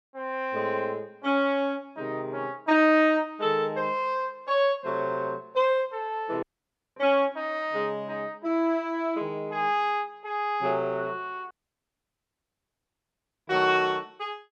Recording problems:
audio cutting out; at 6.5 s for 0.5 s and at 12 s for 2 s

